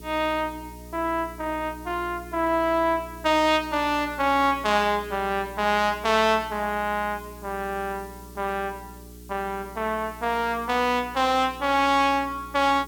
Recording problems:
hum; 60 Hz, harmonics up to 420 Hz, SNR 19 dB
hiss; slope +2 dB per octave, SNR 24 dB

